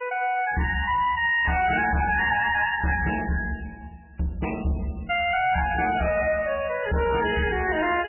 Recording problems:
codec artefacts; MP3, log-spectral distance 5 dB, nothing above 2.5 kHz
distorted audio; soft clipping, signal-to-distortion ratio 10 dB

